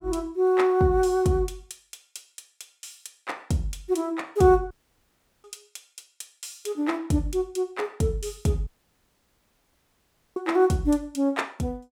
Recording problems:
dropout; at 4.5 s for 0.5 s and at 8.5 s for 1.5 s

